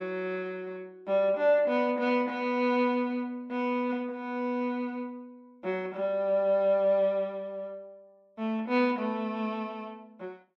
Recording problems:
none

